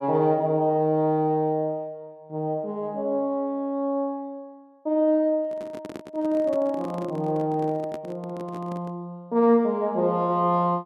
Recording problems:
microphone handling noise; from 5.5 to 9 s; peak -8 dB vs average level

